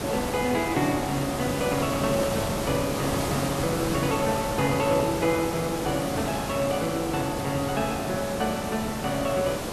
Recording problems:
hiss; slope -5 dB per octave, SNR 2 dB
crackle; from 3.5 to 7 s; loose cable, SNR 25 dB

